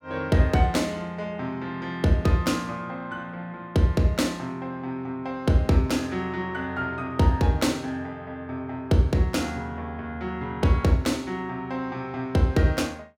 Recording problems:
none

